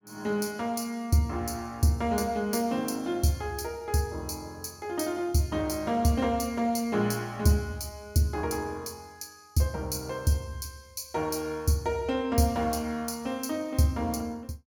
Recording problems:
none

